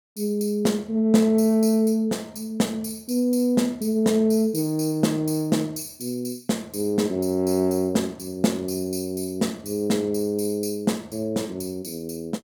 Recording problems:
none

